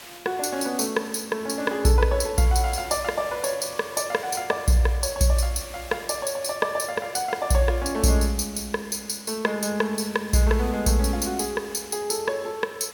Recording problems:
background hiss; slope 0 dB per octave, SNR 19 dB

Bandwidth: 17 kHz